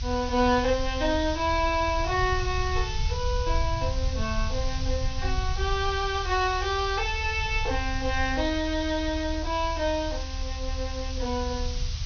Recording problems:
low-pass filter; nothing above 6.2 kHz
hiss; slope +4 dB per octave, SNR 11 dB
low-frequency rumble; below 74 Hz, SNR 5 dB

